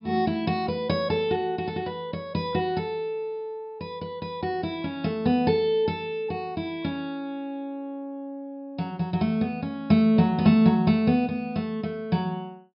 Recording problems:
treble cut off; nothing above 5.5 kHz

